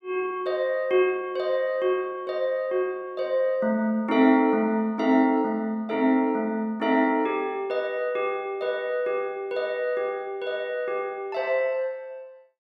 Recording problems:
none

